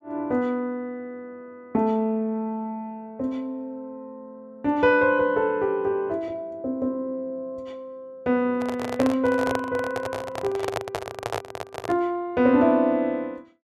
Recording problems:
microphone handling noise; from 8.5 to 12 s; peak +2 dB vs average level

